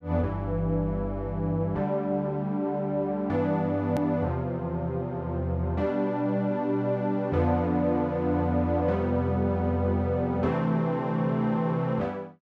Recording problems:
hard cut with a click; at 4 s

